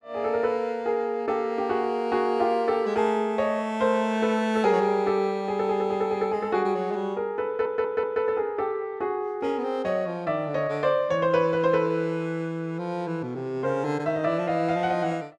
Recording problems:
stutter; at 7.5 s

